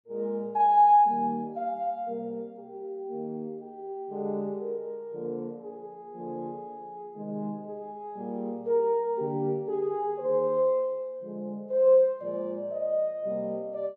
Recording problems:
none

